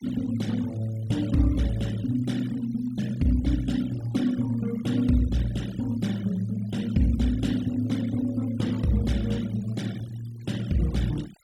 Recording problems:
denoising artefacts; signal-to-artefact ratio 19 dB

